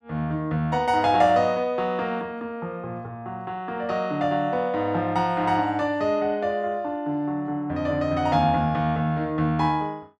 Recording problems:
none

